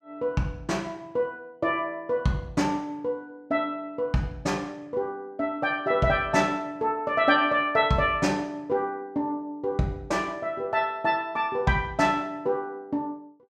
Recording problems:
none

